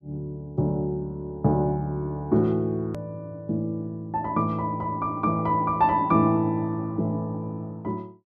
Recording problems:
hard cut with a click; at 3 s

